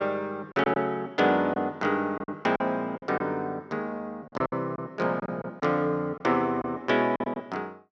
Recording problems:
lost packets; 8% of the sound replaced, filled with silence

